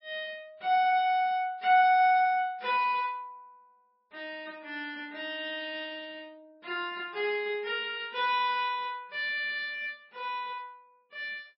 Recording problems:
lossy codec; MP3, log-spectral distance 2 dB, nothing above 5.2 kHz

